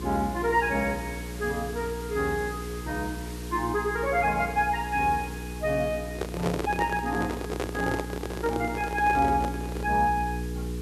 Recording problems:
electrical hum; 60 Hz, harmonics up to 480 Hz, SNR 9 dB
hiss; slope -1 dB per octave, SNR 17 dB
handling noise; from 6 to 10 s; peak +2 dB vs average level

